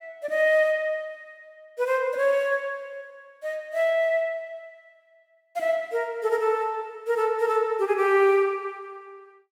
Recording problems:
none

